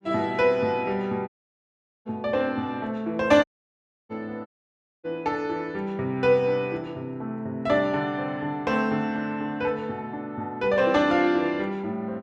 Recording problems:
audio cutting out; at 1.5 s for 1 s, at 3.5 s for 0.5 s and at 4.5 s for 0.5 s

